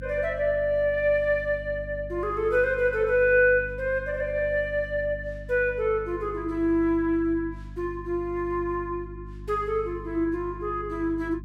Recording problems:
hum; 50 Hz, harmonics up to 300 Hz, SNR 15 dB

